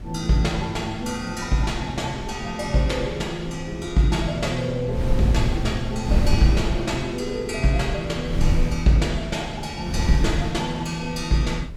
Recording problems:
wind on the microphone; below 100 Hz, SNR 6 dB

